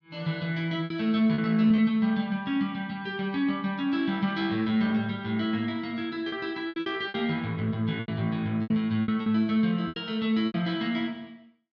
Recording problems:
lost packets; 7% of the sound replaced, filled with repeated pitch periods

